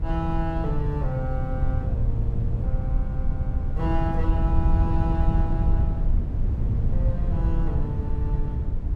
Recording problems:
wind noise; below 88 Hz, SNR -5 dB

